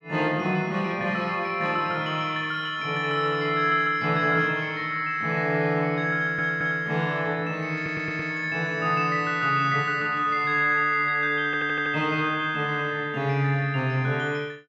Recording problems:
audio stuttering; at 6 s, at 8 s and at 11 s

